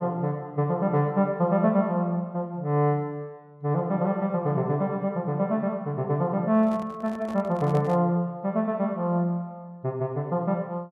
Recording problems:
handling noise; from 6.5 to 8 s; peak -9 dB vs average level

